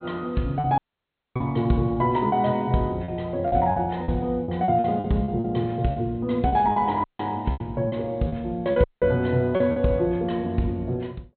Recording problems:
low-pass filter; nothing above 4.2 kHz
packet loss; 9% of the sound replaced, filled with repeated pitch periods
audio cutting out; at 1 s for 0.5 s, at 7 s and at 9 s

